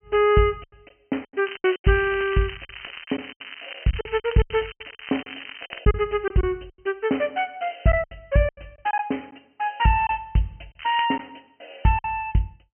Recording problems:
treble missing; nothing above 3.1 kHz
packet loss; 11% of the sound replaced, filled with silence
crackle; from 1.5 to 6 s and at 11 s; loose cable, SNR 13 dB

